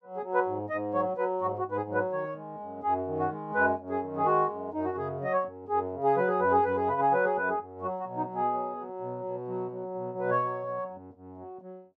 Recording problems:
none

